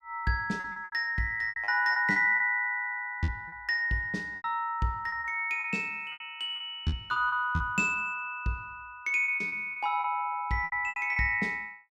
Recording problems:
lost packets; 12% of the sound replaced, filled with repeated pitch periods

